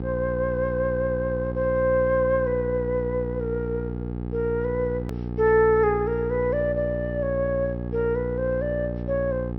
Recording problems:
low-pass filter; nothing above 5.7 kHz
hum; 60 Hz, harmonics up to 900 Hz, SNR 6 dB
click at an edit; at 5 s

